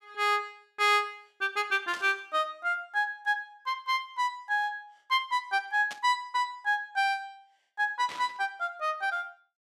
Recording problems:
static burst; at 2 s, at 6 s and at 8 s; peak -7 dB vs average level

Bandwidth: 14.5 kHz